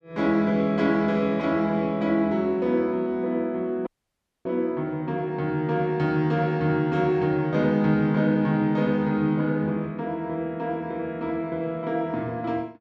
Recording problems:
dropout; at 4 s for 0.5 s

